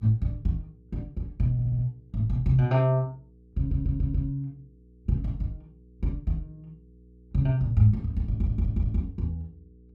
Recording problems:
hum; 60 Hz, harmonics up to 480 Hz, SNR 27 dB
stutter; at 1.5 s, at 3.5 s and at 8.5 s

